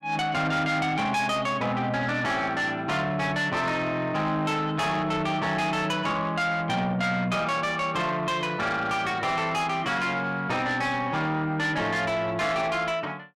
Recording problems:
distortion; soft clipping, signal-to-distortion ratio 10 dB

